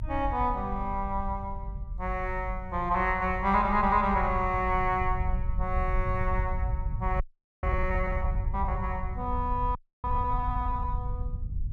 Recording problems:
low-frequency rumble; below 76 Hz, SNR 5 dB
frozen audio; at 7 s and at 10 s

